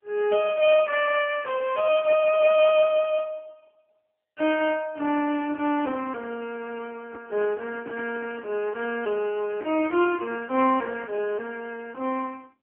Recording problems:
phone line; 260 Hz to 3.2 kHz, AMR-NB
handling noise; from 7 to 8.5 s; peak -11 dB vs average level

